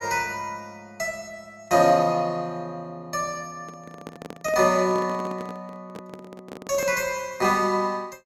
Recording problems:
handling noise; from 3.5 to 7 s; peak -9 dB vs average level

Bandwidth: 16.5 kHz